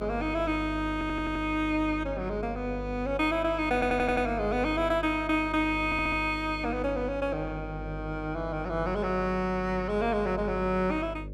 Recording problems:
hum; 50 Hz, harmonics up to 600 Hz, SNR 11 dB
audio stuttering; at 1 s, at 3.5 s and at 6 s

